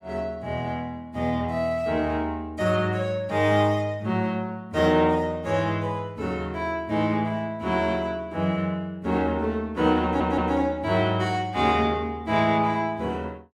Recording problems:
stutter; at 10 s

